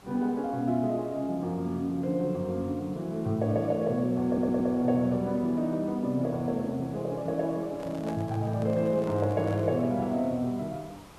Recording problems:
background hiss; SNR 23 dB
stutter; at 4.5 s
handling noise; from 8 to 10 s; peak -7 dB vs average level

